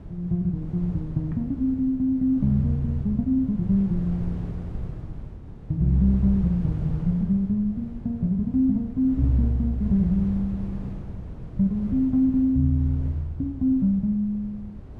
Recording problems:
wind noise; below 150 Hz, SNR 12 dB

